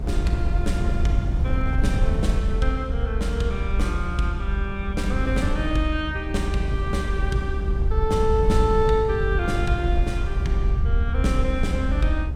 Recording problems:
rumble; below 70 Hz, SNR 0 dB
wind noise; below 120 Hz, SNR 4 dB

